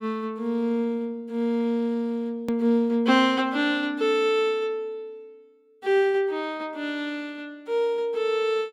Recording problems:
hard cut with a click; at 2.5 s

